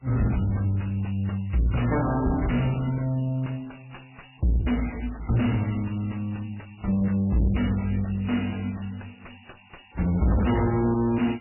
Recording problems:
lossy codec; MP3, log-spectral distance 9 dB, nothing above 2.9 kHz
distorted audio; soft clipping, signal-to-distortion ratio 7 dB

